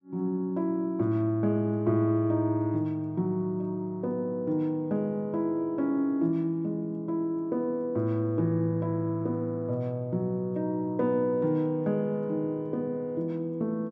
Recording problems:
none

